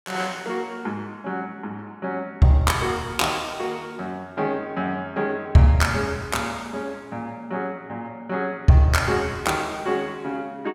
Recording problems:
none

